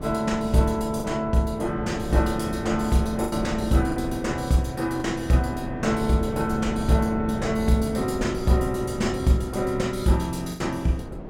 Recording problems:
wind on the microphone; below 380 Hz, SNR 9 dB
lost packets; 3% of the sound replaced, filled with the last packet

